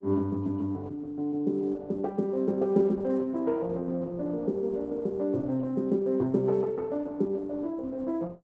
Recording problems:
codec artefacts; Opus, log-spectral distance 2 dB, nothing above 7.3 kHz

